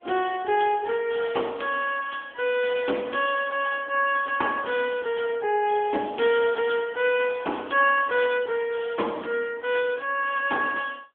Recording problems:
telephone audio; 240 Hz to 3.4 kHz, AMR-NB

